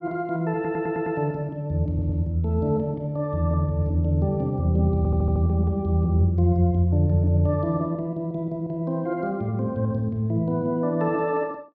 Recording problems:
audio stuttering; at 0.5 s, at 2 s and at 5 s

